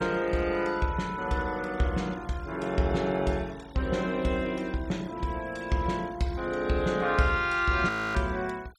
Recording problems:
noise reduction artefacts; signal-to-artefact ratio 23 dB
audio freezing; at 8 s

